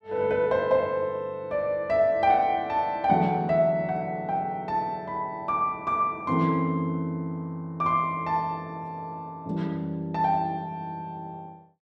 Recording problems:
none

